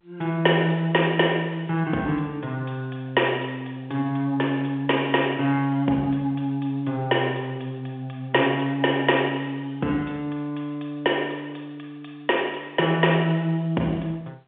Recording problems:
phone line; 240 Hz to 3.4 kHz, G.711

